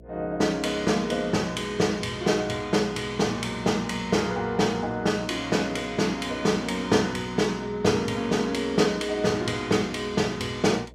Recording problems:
hum; 60 Hz, harmonics up to 660 Hz, SNR 22 dB

